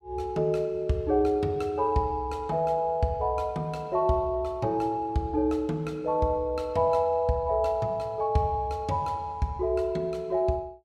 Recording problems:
none

